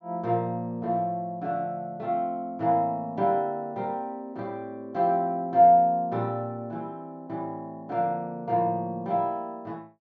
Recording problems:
treble cut off; nothing above 8 kHz

